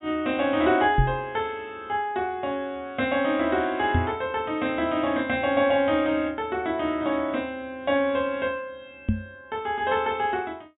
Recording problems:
low-pass filter; nothing above 4 kHz
microphone thump; at 1 s, at 4 s and at 9 s; peak +6 dB vs average level

